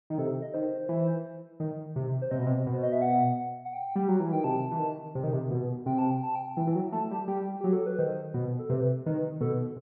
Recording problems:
none

